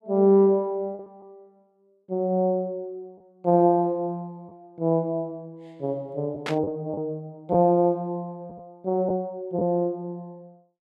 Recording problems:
lost packets; 2% of the sound replaced, filled with the last packet
burst of static; at 6.5 s; peak -3 dB vs average level

